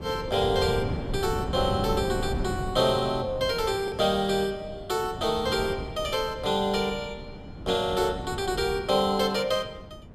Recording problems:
wind noise; below 280 Hz, SNR 10 dB
lost packets; 0.4% of the sound replaced, filled with the last packet

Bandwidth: 15.5 kHz